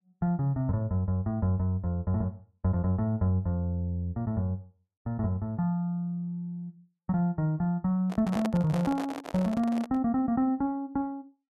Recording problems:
microphone handling noise; from 8 to 10 s; peak -1 dB vs average level

